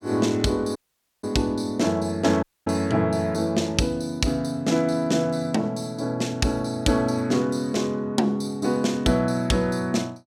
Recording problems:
audio cutting out; at 1 s and at 2.5 s

